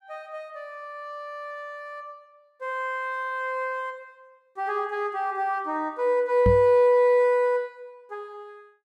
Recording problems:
microphone bump; at 6.5 s; peak +4 dB vs average level

